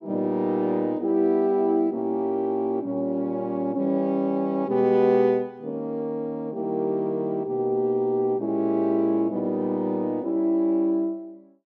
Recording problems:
none

